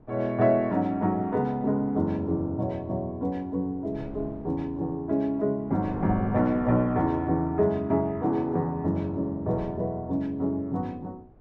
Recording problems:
wind noise; below 380 Hz, SNR 18 dB

